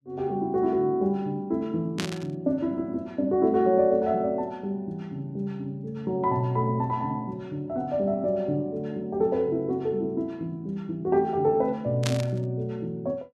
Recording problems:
static burst; at 2 s and at 12 s; peak +1 dB vs average level

